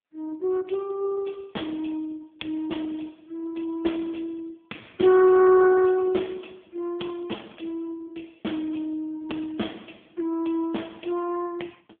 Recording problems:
phone line; 190 Hz to 3.4 kHz, AMR-NB

